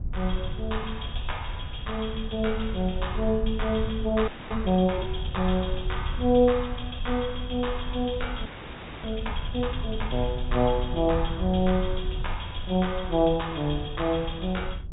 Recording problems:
treble missing; nothing above 4 kHz
low-frequency rumble; below 78 Hz, SNR 7 dB
frozen audio; at 4.5 s and at 8.5 s for 0.5 s

